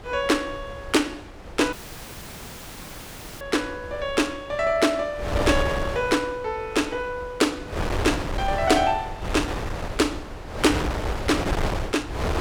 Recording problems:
wind noise; below 830 Hz, SNR 5 dB
audio cutting out; at 1.5 s for 1.5 s

